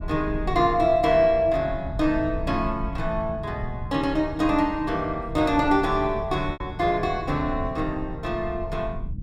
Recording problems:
rumble; below 110 Hz, SNR 11 dB
packet loss; 1% of the sound replaced, filled with repeated pitch periods

